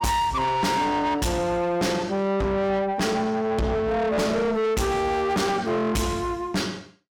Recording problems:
distorted audio; soft clipping, signal-to-distortion ratio 6 dB

